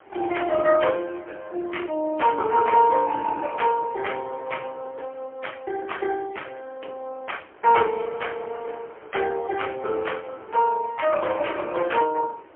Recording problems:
phone line; 280 Hz to 3.2 kHz, AMR-NB, then MP3
wind on the microphone; below 1.4 kHz, SNR 24 dB

